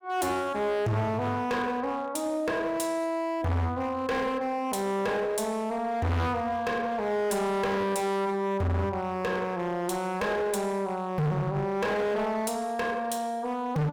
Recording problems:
distortion; hard clipping, signal-to-distortion ratio 6 dB

